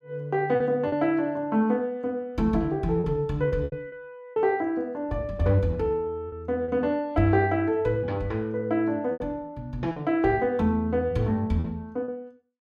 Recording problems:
lost packets; 5% of the sound replaced, filled with repeated pitch periods

